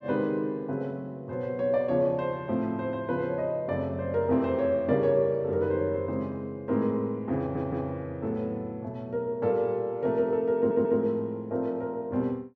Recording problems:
stutter; at 7.5 s and at 11 s

